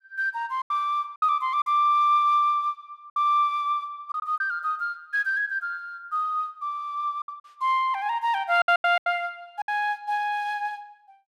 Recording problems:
packet loss; 6% of the sound replaced, filled with silence

